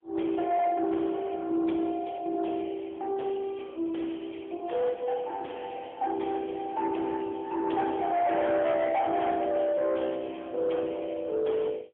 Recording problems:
telephone audio; 280 Hz to 2.4 kHz, AMR-NB, then MP3
distortion; soft clipping, signal-to-distortion ratio 11 dB

